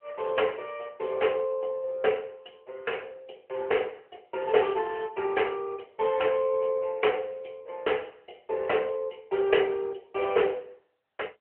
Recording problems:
phone line; 340 Hz to 3.2 kHz, AMR-NB

